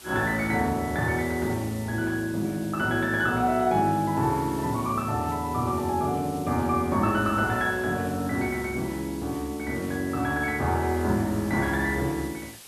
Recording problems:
hiss; slope 0 dB per octave, SNR 18 dB

